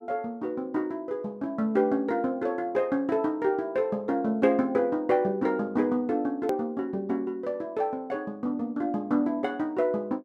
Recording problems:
click at an edit; at 6.5 s

